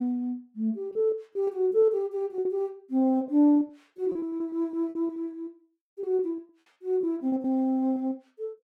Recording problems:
packet loss; 12% of the sound replaced, filled with repeated pitch periods

